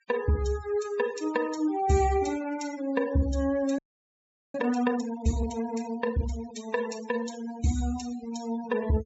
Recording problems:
treble cut off; nothing above 8 kHz
denoising artefacts; signal-to-artefact ratio 15 dB
frozen audio; at 4 s for 1 s

